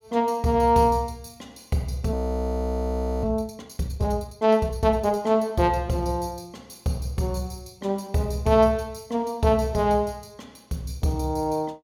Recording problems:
audio freezing; at 2 s for 1 s

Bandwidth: 17.5 kHz